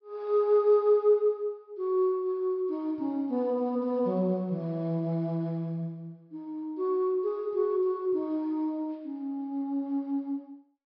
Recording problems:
treble missing; nothing above 5.5 kHz

